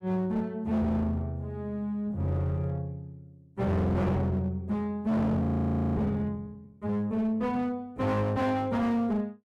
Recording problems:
distortion; hard clipping, uneven, signal-to-distortion ratio 7 dB
audio freezing; at 5.5 s for 0.5 s

